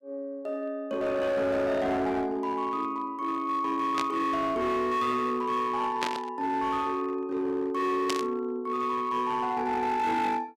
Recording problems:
distorted audio; hard clipping, signal-to-distortion ratio 11 dB
burst of static; at 4 s, at 6 s and at 8 s; peak +2 dB vs average level

